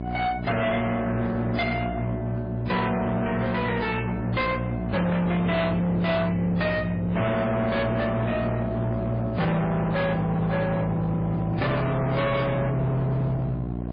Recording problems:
lossy codec; MP3, then AAC, log-spectral distance 2 dB
distortion; hard clipping, uneven, signal-to-distortion ratio 8 dB
electrical hum; 60 Hz, harmonics up to 1.1 kHz, SNR 8 dB

